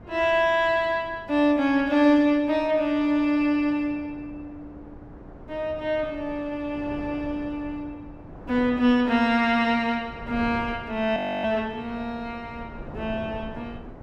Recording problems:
wind noise; below 500 Hz, SNR 19 dB
frozen audio; at 11 s

